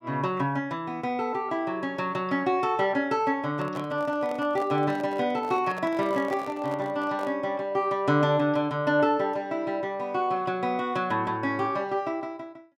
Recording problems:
handling noise; from 3.5 to 7.5 s; peak -6 dB vs average level

